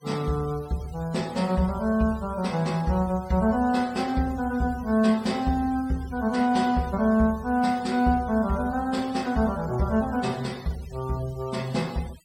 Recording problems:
noise reduction artefacts; signal-to-artefact ratio 21 dB

